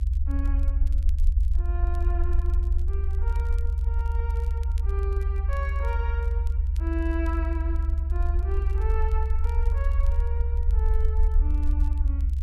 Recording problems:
low-frequency rumble; below 70 Hz, SNR -12 dB
crackling; vinyl, SNR 22 dB

